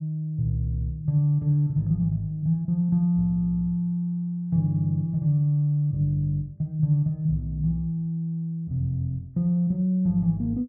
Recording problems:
none

